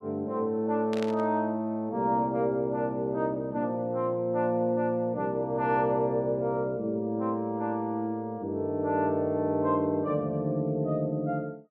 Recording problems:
static burst; at 1 s; peak -7 dB vs average level

